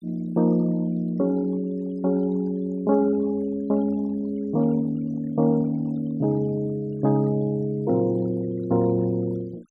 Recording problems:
denoising artefacts; signal-to-artefact ratio 26 dB

